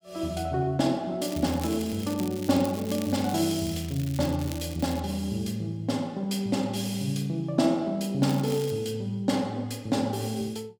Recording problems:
crackling; from 1 to 5 s and at 8 s; loose cable, SNR 15 dB

